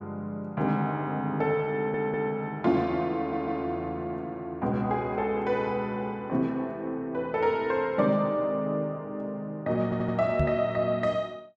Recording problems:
audio stuttering; at 2 s, at 3 s and at 10 s
microphone thump; at 10 s; peak +4 dB vs average level

